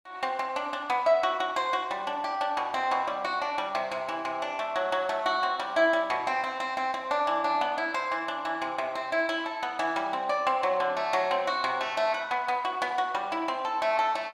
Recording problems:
none

